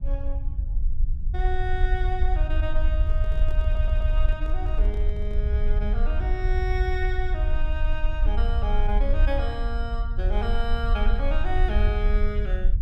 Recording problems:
low-frequency rumble; below 54 Hz, SNR -6 dB
handling noise; from 3 to 5.5 s; peak -8 dB vs average level
stutter; at 3.5 s

